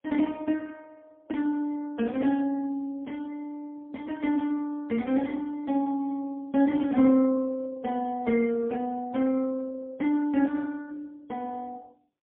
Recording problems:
phone line; 130 Hz to 3.2 kHz, AMR-NB, then MP3

